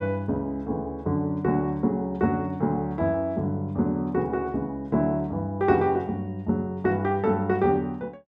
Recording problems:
none

